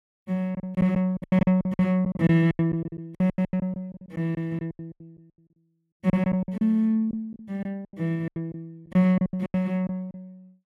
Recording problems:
lost packets; 20% of the sound replaced, filled with silence

